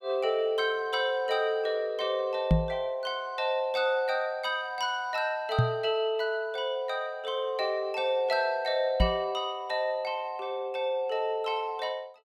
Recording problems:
microphone bump; at 2.5 s, at 5.5 s and at 9 s; peak +9 dB vs average level

